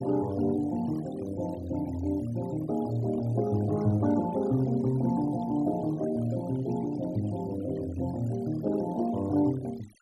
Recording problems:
noise reduction artefacts; signal-to-artefact ratio 20 dB

